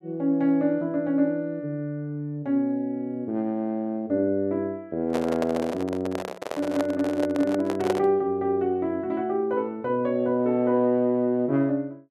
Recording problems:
handling noise; from 5 to 8 s; peak +2 dB vs average level

